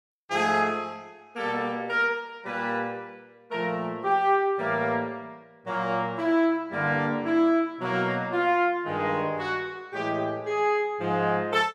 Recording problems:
none

